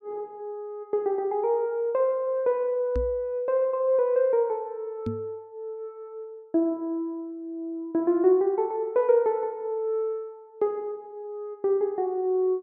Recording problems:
microphone thump; at 3 s and at 5 s; peak -1 dB vs average level

